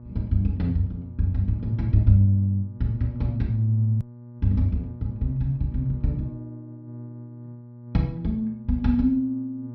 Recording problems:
treble cut off; nothing above 5.8 kHz
hum; 60 Hz, harmonics up to 840 Hz, SNR 16 dB
hard cut with a click; at 4 s

